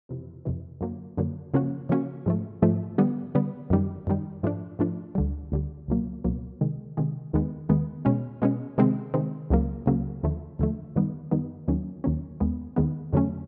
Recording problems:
low-pass filter; nothing above 8 kHz

